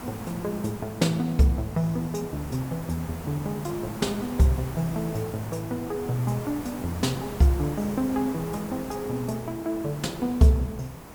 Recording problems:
background hiss; SNR 12 dB

